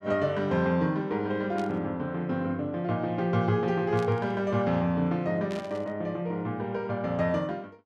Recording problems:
static burst; at 1.5 s, at 4 s and at 5.5 s; peak -12 dB vs average level

